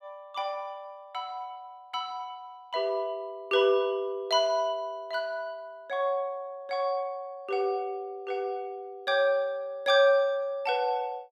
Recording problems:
none

